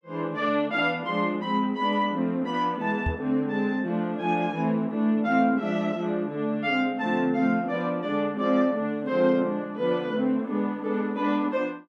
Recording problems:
microphone bump; at 3 s; peak +1 dB vs average level

